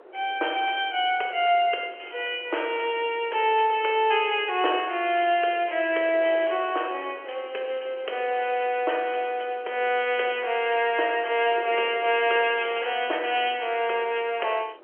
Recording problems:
phone line; 320 Hz to 3.2 kHz, G.711
wind noise; below 700 Hz, SNR 22 dB

